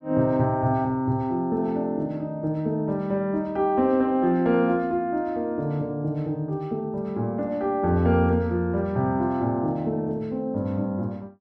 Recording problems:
none

